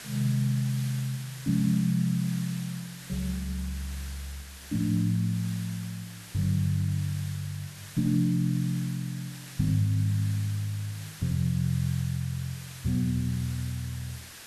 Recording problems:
hiss; SNR 14 dB

